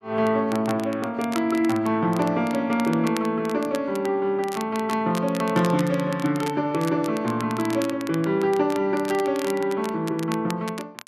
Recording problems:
crackling; vinyl, SNR 16 dB

